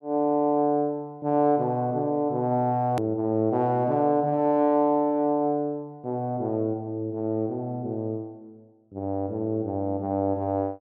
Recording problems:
click at an edit; at 3 s

